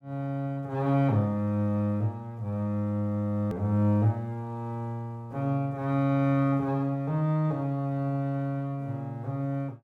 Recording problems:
hard cut with a click; at 3.5 s

